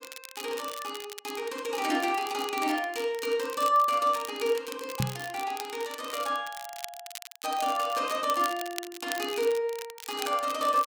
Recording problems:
crackling; vinyl, SNR 12 dB
microphone thump; at 5 s; peak +4 dB vs average level

